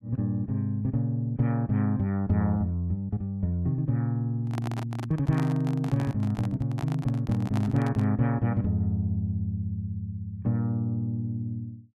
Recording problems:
handling noise; from 4.5 to 8 s; peak -4 dB vs average level

